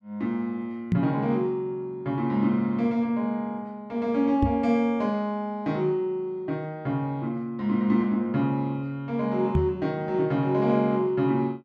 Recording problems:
knock on the microphone; at 1 s, at 4.5 s and at 9.5 s; peak +6 dB vs average level

